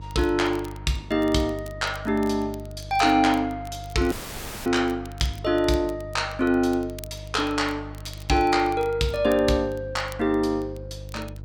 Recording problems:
mains hum; 50 Hz, harmonics up to 650 Hz, SNR 15 dB
crackling; vinyl, SNR 25 dB
dropout; at 4 s for 0.5 s

